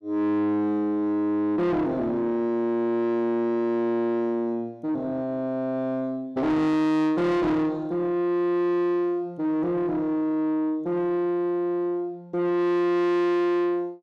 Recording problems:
distortion; soft clipping, signal-to-distortion ratio 8 dB

